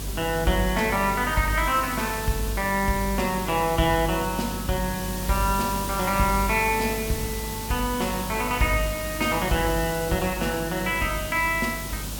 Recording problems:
hum; 50 Hz, harmonics up to 300 Hz, SNR 12 dB
background hiss; SNR 8 dB

